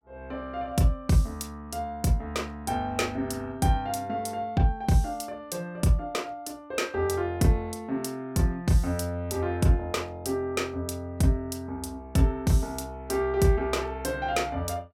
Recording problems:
none

